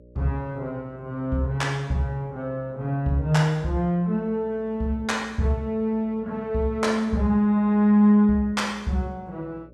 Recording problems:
hum; 60 Hz, harmonics up to 600 Hz, SNR 26 dB

